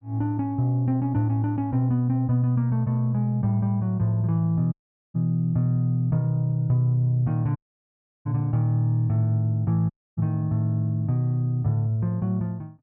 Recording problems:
dropout; at 4.5 s, at 7.5 s for 0.5 s and at 10 s

